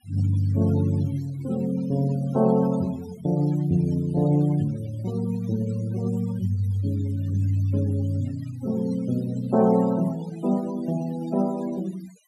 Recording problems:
noise reduction artefacts; signal-to-artefact ratio 20 dB

